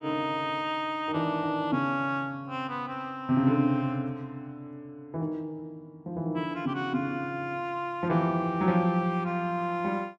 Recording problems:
none

